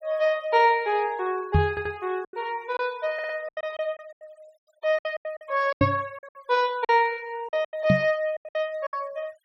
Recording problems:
noise reduction artefacts; signal-to-artefact ratio 26 dB
packet loss; 12% of the sound replaced, filled with silence
microphone bump; at 1.5 s, at 6 s and at 8 s; peak +8 dB vs average level
stutter; at 1.5 s and at 3 s

